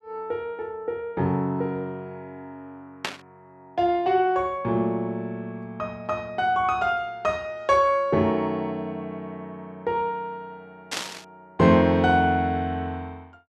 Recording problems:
burst of static; at 3 s and at 11 s; peak +1 dB vs average level

